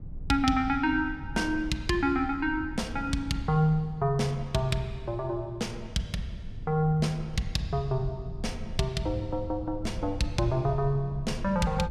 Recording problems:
low-frequency rumble; below 100 Hz, SNR 12 dB

